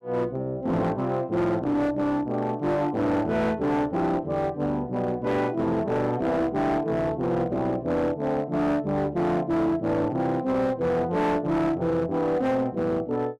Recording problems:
distortion; hard clipping, signal-to-distortion ratio 10 dB

